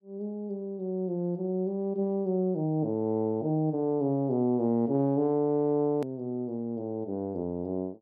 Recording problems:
treble cut off; nothing above 4.8 kHz
hard cut with a click; at 6 s

